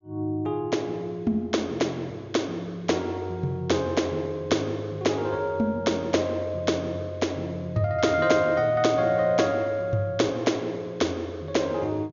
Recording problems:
treble missing; nothing above 7 kHz

